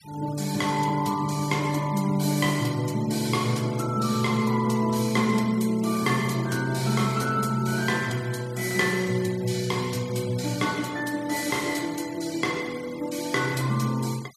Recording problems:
noise reduction artefacts; signal-to-artefact ratio 18 dB

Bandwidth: 14.5 kHz